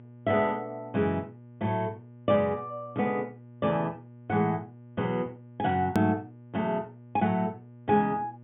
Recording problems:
treble cut off; nothing above 3.4 kHz
hum; 60 Hz, harmonics up to 840 Hz, SNR 20 dB
hard cut with a click; at 6 s

